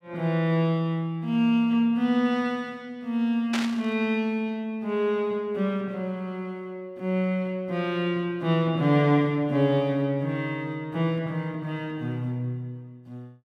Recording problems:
static burst; at 3.5 s; peak 0 dB vs average level

